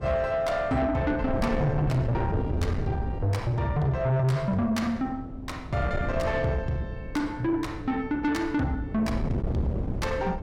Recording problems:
distortion; soft clipping, signal-to-distortion ratio 10 dB
wind on the microphone; below 250 Hz, SNR 7 dB

